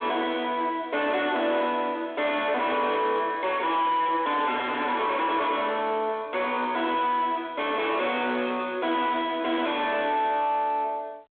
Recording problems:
phone line; 260 Hz to 3.6 kHz, G.726
distorted audio; soft clipping, signal-to-distortion ratio 5 dB

